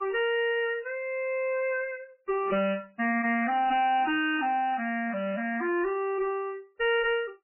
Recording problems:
codec artefacts; MP3, log-spectral distance 3 dB, nothing above 2.4 kHz
distortion; soft clipping, signal-to-distortion ratio 9 dB

